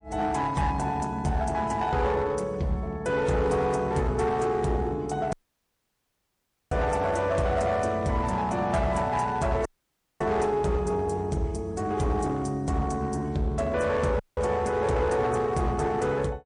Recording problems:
lossy compression; MP3, log-spectral distance 2 dB, nothing above 9.5 kHz
distortion; hard clipping, uneven, signal-to-distortion ratio 11 dB
dropout; at 5.5 s for 1.5 s, at 9.5 s for 0.5 s and at 14 s

